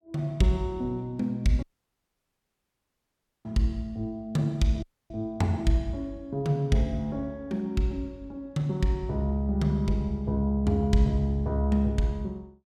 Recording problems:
audio cutting out; at 1.5 s for 2 s and at 5 s

